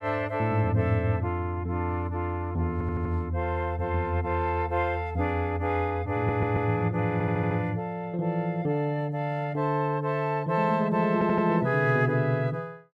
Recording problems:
stutter; 4 times, first at 2.5 s

